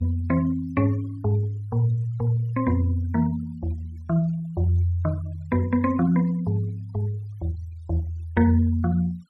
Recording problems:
denoising artefacts; signal-to-artefact ratio 27 dB

